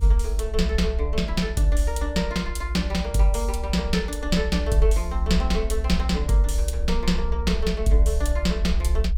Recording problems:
rumble; below 64 Hz, SNR 3 dB

